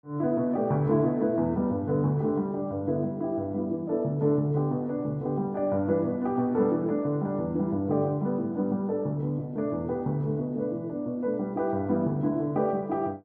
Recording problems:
none

